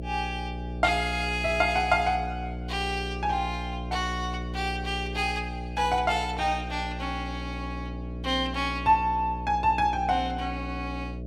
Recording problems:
hum; 60 Hz, harmonics up to 660 Hz, SNR 8 dB

